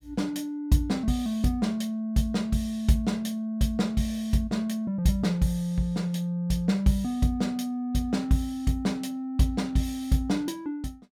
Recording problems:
none

